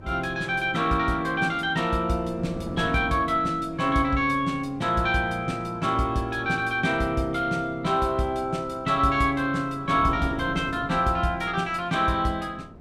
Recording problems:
wind noise; below 350 Hz, SNR 17 dB

